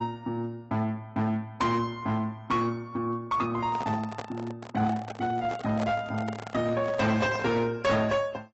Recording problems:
lossy compression; AAC, log-spectral distance 2 dB, nothing above 7.3 kHz
distorted audio; hard clipping, signal-to-distortion ratio 12 dB
microphone handling noise; from 3.5 to 7.5 s; peak -3 dB vs average level

